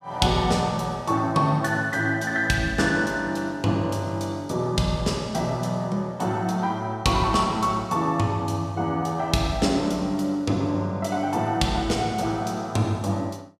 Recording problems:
none

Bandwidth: 15.5 kHz